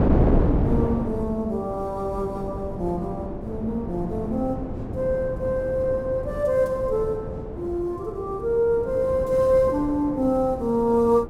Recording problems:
wind noise; below 380 Hz, SNR 5 dB

